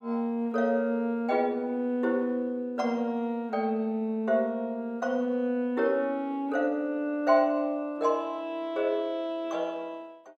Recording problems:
none

